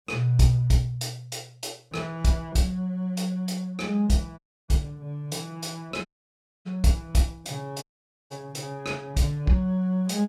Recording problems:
dropout; at 4.5 s, at 6 s for 0.5 s and at 8 s

